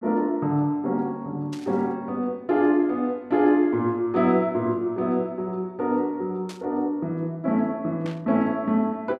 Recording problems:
static burst; at 1.5 s, at 6.5 s and at 8 s; peak -12 dB vs average level

